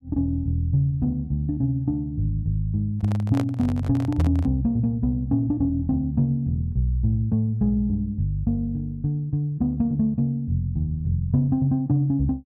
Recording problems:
microphone handling noise; from 3 to 4.5 s; peak -5 dB vs average level

